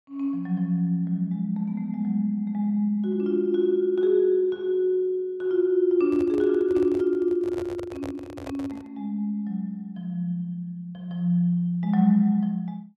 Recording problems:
microphone handling noise; from 6 to 9 s; peak -9 dB vs average level

